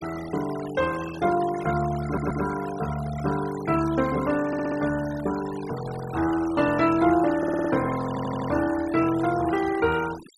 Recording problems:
noise reduction artefacts; signal-to-artefact ratio 14 dB
audio stuttering; 4 times, first at 2 s

